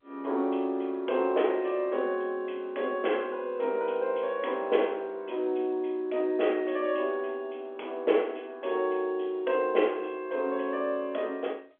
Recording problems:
phone line; 240 Hz to 3.6 kHz, G.711

